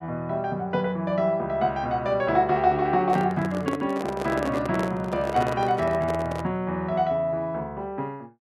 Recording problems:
microphone handling noise; from 3 to 6.5 s; peak -1 dB vs average level

